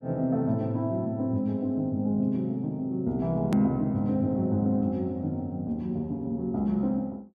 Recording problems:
edit click; at 3.5 s

